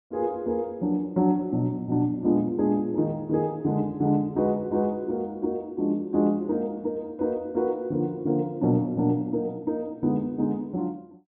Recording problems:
treble missing; nothing above 4 kHz

